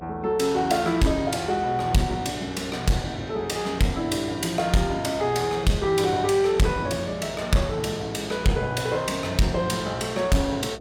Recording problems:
distorted audio; soft clipping, signal-to-distortion ratio 11 dB
hum; 60 Hz, harmonics up to 720 Hz, SNR 20 dB

